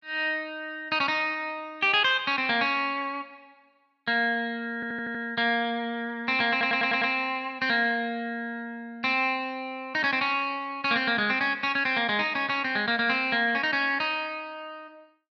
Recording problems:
stutter; at 5 s and at 6.5 s

